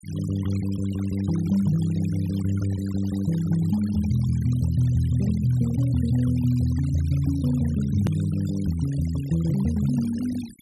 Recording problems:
denoising artefacts; signal-to-artefact ratio 20 dB
hard cut with a click; at 8 s

